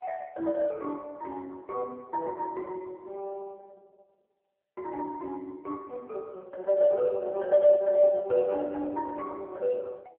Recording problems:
phone line; 300 Hz to 2.7 kHz, AMR-NB

